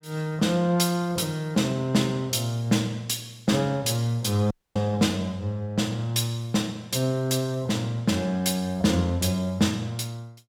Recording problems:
dropout; at 4.5 s

